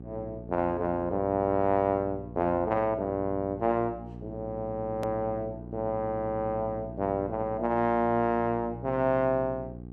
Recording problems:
hum; 60 Hz, harmonics up to 840 Hz, SNR 13 dB
hard cut with a click; at 5 s

